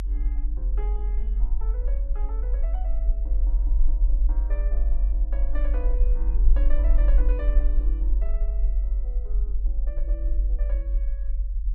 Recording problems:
low-frequency rumble; below 46 Hz, SNR -17 dB

